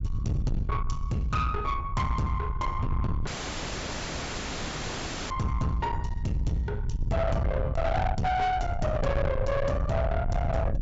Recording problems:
low-pass filter; nothing above 8 kHz
distortion; soft clipping, signal-to-distortion ratio 7 dB
low-frequency rumble; below 150 Hz, SNR 3 dB
audio cutting out; at 3.5 s for 2 s

